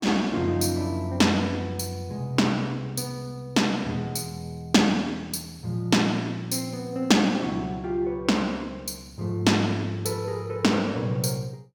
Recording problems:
none

